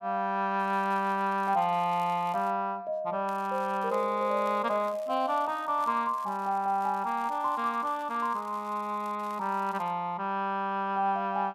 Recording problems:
crackle; from 0.5 to 2.5 s and from 3.5 to 10 s; loose cable, SNR 26 dB

